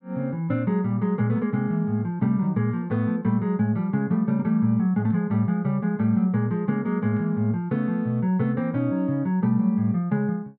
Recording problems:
none

